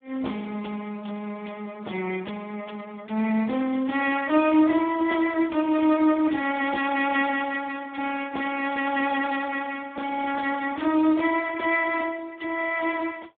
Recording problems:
phone line; 220 Hz to 2.9 kHz, Speex

